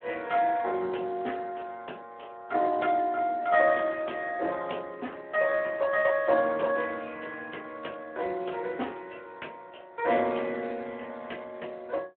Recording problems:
telephone audio; 280 Hz to 3.4 kHz, Speex

